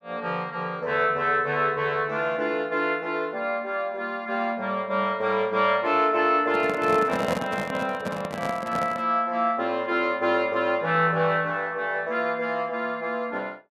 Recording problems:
handling noise; from 6.5 to 9 s; peak +1 dB vs average level

